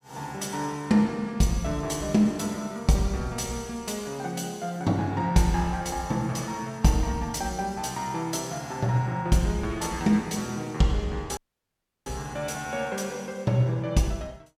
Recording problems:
dropout; at 11 s for 0.5 s

